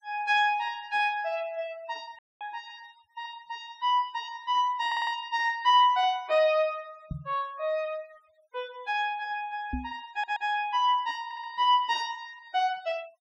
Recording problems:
noise reduction artefacts; signal-to-artefact ratio 27 dB
dropout; at 2 s
stutter; at 5 s, at 10 s and at 11 s
microphone bump; at 7 s and at 9.5 s; peak -2 dB vs average level

